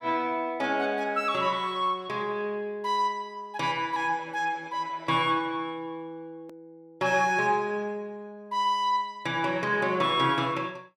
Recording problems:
click at an edit; at 6.5 s

